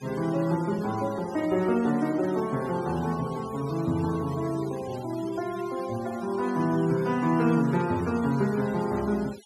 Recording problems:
noise reduction artefacts; signal-to-artefact ratio 18 dB

